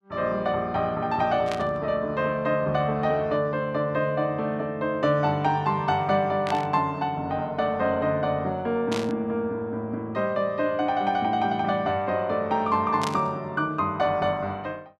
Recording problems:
burst of static; 4 times, first at 1.5 s; peak -3 dB vs average level

